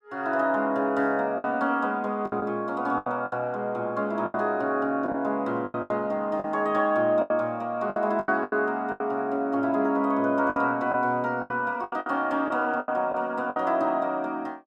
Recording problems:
lost packets; 10% of the sound replaced, filled with the last packet

